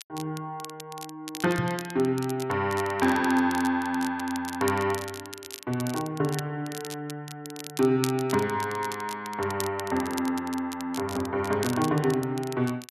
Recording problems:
crackling; vinyl, SNR 13 dB
knock on the microphone; at 1.5 s; peak +1 dB vs average level

